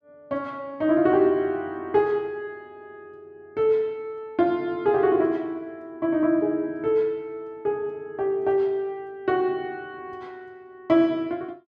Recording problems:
none

